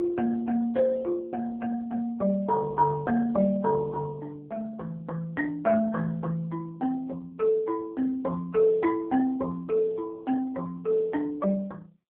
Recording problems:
phone line; 170 Hz to 2.5 kHz, AMR-NB

